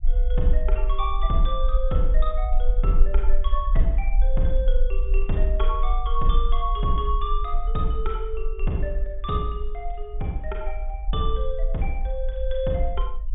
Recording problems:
low-pass filter; nothing above 3.6 kHz
rumble; below 40 Hz, strongest tone 22 Hz, SNR -2 dB

